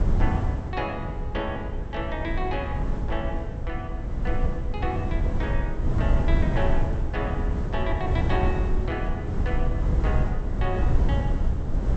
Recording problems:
treble missing; nothing above 8 kHz
wind noise; below 110 Hz, SNR -5 dB

